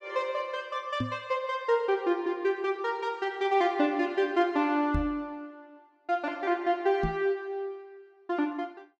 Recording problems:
microphone thump; at 1 s, at 5 s and at 7 s; peak +2 dB vs average level

